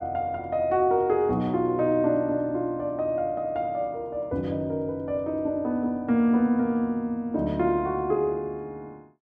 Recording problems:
none

